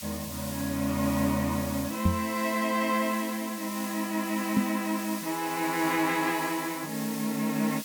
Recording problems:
background hiss; slope +4 dB per octave, SNR 9 dB
microphone thump; at 2 s and at 4.5 s; peak +7 dB vs average level

